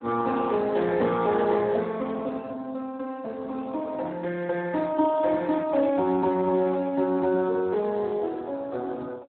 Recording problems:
phone line; 240 Hz to 3.8 kHz, Speex

